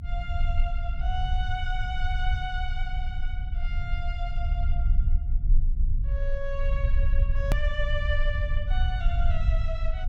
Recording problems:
low-frequency rumble; below 56 Hz, strongest tone 24 Hz, SNR -7 dB
click at an edit; at 7.5 s

